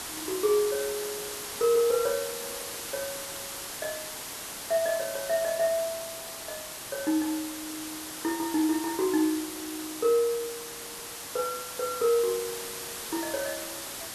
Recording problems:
hiss; slope -1 dB per octave, SNR 6 dB

